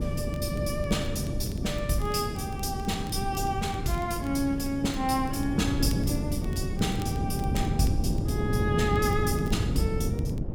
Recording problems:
wind on the microphone; below 220 Hz, SNR 1 dB
crackle; vinyl, SNR 23 dB

